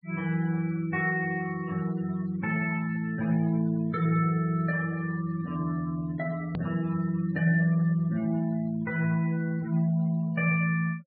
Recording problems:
treble missing; nothing above 4.6 kHz
noise reduction artefacts; signal-to-artefact ratio 21 dB
edit click; at 6.5 s

